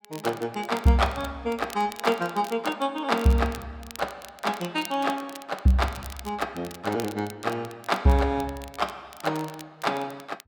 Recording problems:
crackle; vinyl, SNR 18 dB

